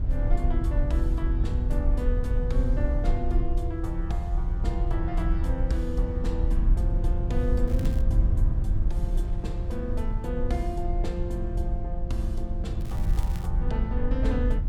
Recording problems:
low-frequency rumble; below 66 Hz, SNR -6 dB
wind noise; below 360 Hz, SNR 21 dB
crackling; at 7.5 s and at 13 s; loose cable, SNR 16 dB

